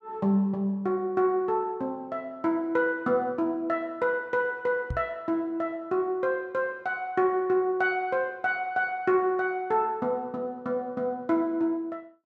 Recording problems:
knock on the microphone; at 5 s; peak -1 dB vs average level

